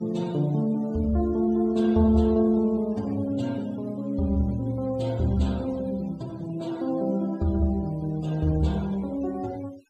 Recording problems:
denoising artefacts; signal-to-artefact ratio 25 dB

